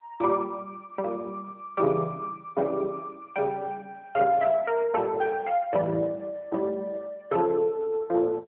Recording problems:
telephone audio; 260 Hz to 3.5 kHz, AMR-NB

